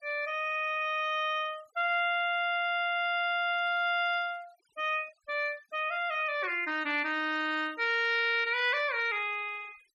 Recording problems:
denoising artefacts; signal-to-artefact ratio 24 dB

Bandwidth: 12.5 kHz